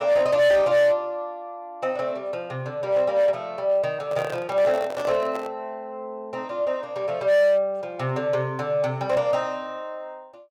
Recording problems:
distortion; hard clipping, signal-to-distortion ratio 10 dB
handling noise; from 4 to 5.5 s; peak -4 dB vs average level

